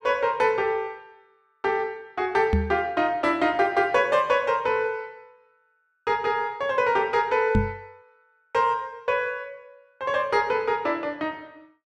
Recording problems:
knock on the microphone; at 2.5 s and at 7.5 s; peak +6 dB vs average level

